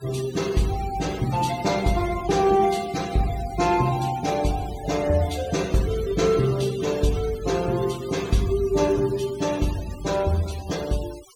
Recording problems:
noise reduction artefacts; signal-to-artefact ratio 16 dB

